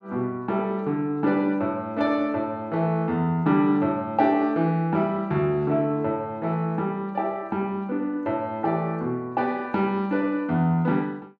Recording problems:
none

